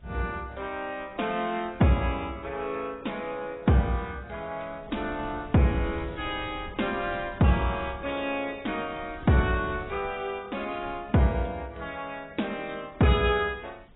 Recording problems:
codec artefacts; AAC, log-spectral distance 5 dB, nothing above 3.4 kHz
wind noise; below 240 Hz, SNR 18 dB

